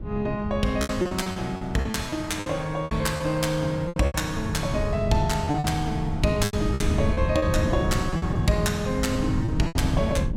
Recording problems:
wind noise; below 160 Hz, SNR 4 dB
lost packets; 12% of the sound replaced, filled with repeated pitch periods

